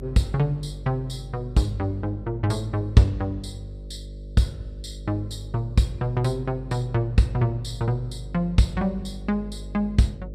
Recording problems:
hum; 50 Hz, harmonics up to 600 Hz, SNR 13 dB

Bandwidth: 14.5 kHz